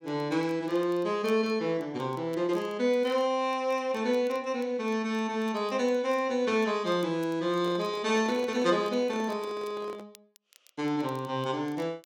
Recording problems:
crackle; vinyl, SNR 29 dB
microphone handling noise; from 7.5 to 10 s; peak -5 dB vs average level

